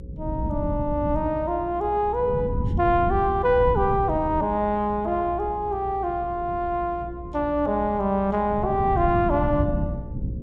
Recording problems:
hum; 60 Hz, harmonics up to 540 Hz, SNR 16 dB
wind on the microphone; below 180 Hz, SNR 7 dB

